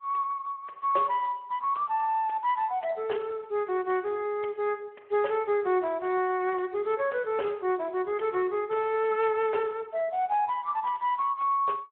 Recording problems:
phone line; 320 Hz to 3.2 kHz, Speex

